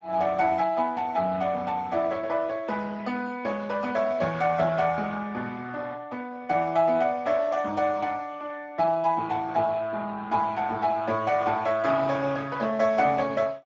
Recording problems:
lossy codec; Speex, log-spectral distance 4 dB

